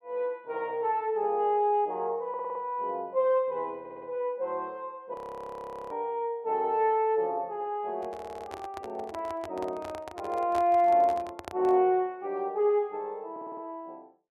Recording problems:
stutter; 4 times, first at 2.5 s
audio freezing; at 5 s for 1 s
microphone handling noise; from 8 to 12 s; peak -5 dB vs average level

